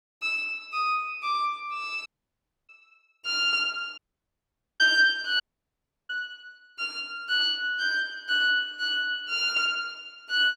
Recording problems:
audio cutting out; at 2 s for 0.5 s, at 4 s for 1 s and at 5.5 s for 0.5 s

